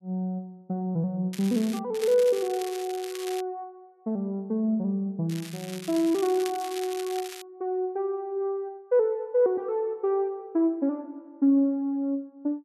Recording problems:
crackling; at 1.5 s, from 2 to 3.5 s and from 5.5 to 7.5 s; loose cable, SNR 14 dB

